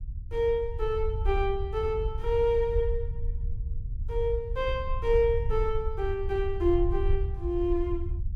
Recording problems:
rumble; below 70 Hz, SNR 4 dB

